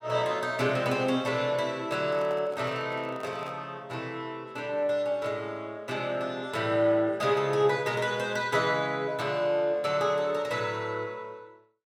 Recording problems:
handling noise; from 2 to 3.5 s; peak -10 dB vs average level

